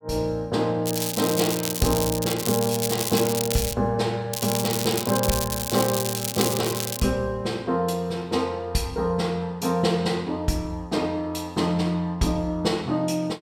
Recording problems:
crackle; from 1 to 3.5 s and from 4.5 to 7 s; loose cable, SNR 3 dB

